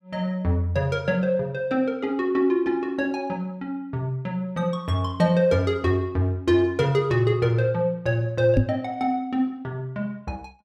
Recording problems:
microphone bump; at 8.5 s; peak +8 dB vs average level

